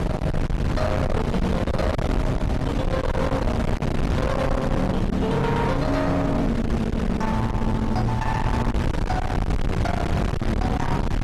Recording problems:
codec artefacts; Opus, log-spectral distance 2 dB, nothing above 13.1 kHz
distorted audio; hard clipping, uneven, signal-to-distortion ratio 7 dB
wind on the microphone; below 390 Hz, SNR 1 dB

